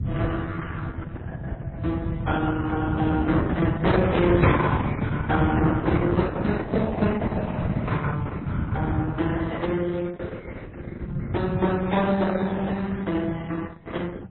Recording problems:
lossy compression; Opus, then MP3, log-spectral distance 3 dB, nothing above 4 kHz
rumble; below 170 Hz, SNR 1 dB

